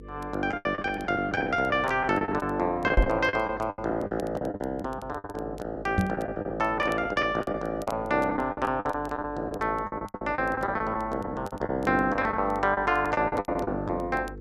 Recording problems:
hum; 50 Hz, harmonics up to 500 Hz, SNR 17 dB
crackling; vinyl, SNR 29 dB
lost packets; 16% of the sound replaced, filled with the last packet
microphone thump; at 3 s and at 6 s; peak +8 dB vs average level

